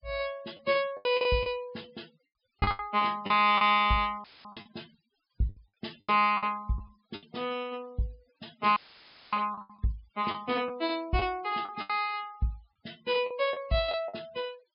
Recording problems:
low-pass filter; nothing above 5.5 kHz
noise reduction artefacts; signal-to-artefact ratio 26 dB
packet loss; 10% of the sound replaced, filled with the last packet
dropout; at 4 s and at 9 s for 0.5 s; filled with static

